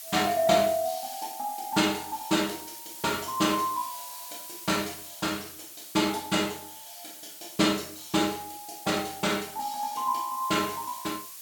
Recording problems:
background hiss; slope +3 dB per octave, SNR 12 dB

